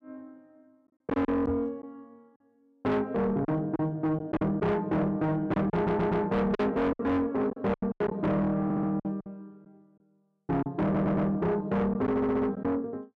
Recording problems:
distortion; soft clipping, signal-to-distortion ratio 7 dB
lost packets; 9% of the sound replaced, filled with silence
knock on the microphone; at 1.5 s; peak -4 dB vs average level
stutter; 4 times, first at 5.5 s

